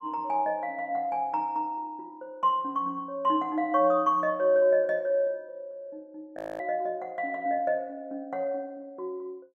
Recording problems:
audio freezing; at 6.5 s

